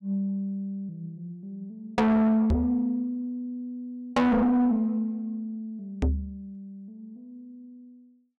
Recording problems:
distortion; soft clipping, signal-to-distortion ratio 7 dB
microphone thump; at 2.5 s and at 6 s; peak +5 dB vs average level

